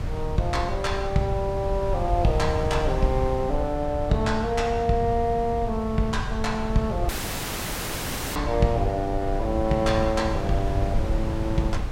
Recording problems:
wind noise; below 120 Hz, SNR 4 dB
dropout; at 7 s for 1.5 s

